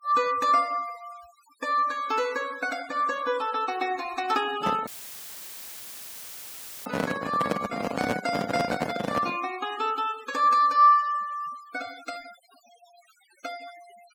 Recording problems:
denoising artefacts; signal-to-artefact ratio 19 dB
handling noise; from 4.5 to 9.5 s; peak +3 dB vs average level
audio cutting out; at 5 s for 2 s; filled with static

